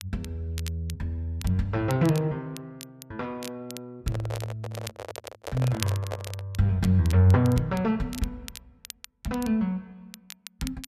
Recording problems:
crackle; vinyl, SNR 17 dB
microphone handling noise; from 4 to 6.5 s; peak -2 dB vs average level

